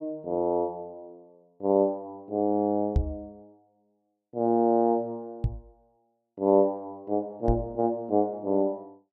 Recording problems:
microphone thump; at 3 s, at 5.5 s and at 7.5 s; peak +6 dB vs average level

